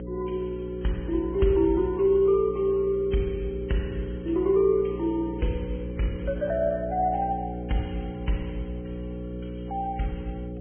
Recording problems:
low-pass filter; nothing above 3.2 kHz
lossy codec; Vorbis, log-spectral distance 2 dB
hum; 60 Hz, harmonics up to 540 Hz, SNR 9 dB

